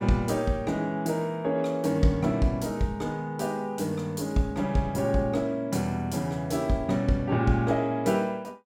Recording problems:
none

